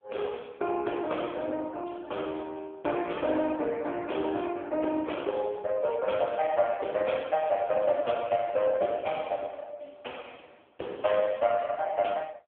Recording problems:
telephone audio; 280 Hz to 3.4 kHz, AMR-NB

